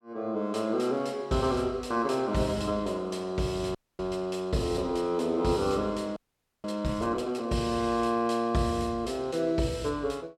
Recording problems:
frozen audio; at 4 s and at 6 s

